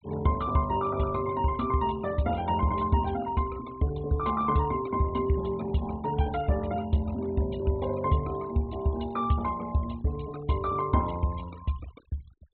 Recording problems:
treble missing; nothing above 4 kHz
noise reduction artefacts; signal-to-artefact ratio 21 dB

